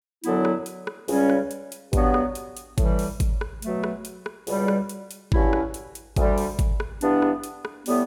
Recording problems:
none

